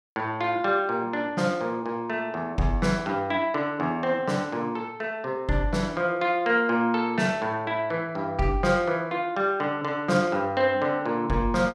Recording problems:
none

